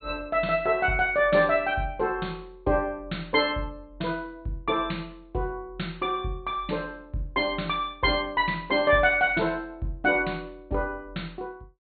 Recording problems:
treble cut off; nothing above 4.4 kHz

